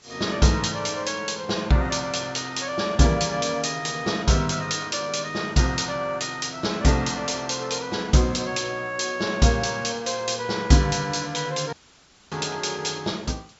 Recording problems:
treble missing; nothing above 8 kHz
background hiss; slope -1 dB per octave, SNR 27 dB
dropout; at 12 s for 0.5 s

